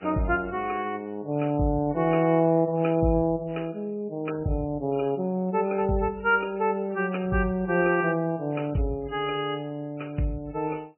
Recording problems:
lossy compression; MP3, log-spectral distance 3 dB, nothing above 2.9 kHz

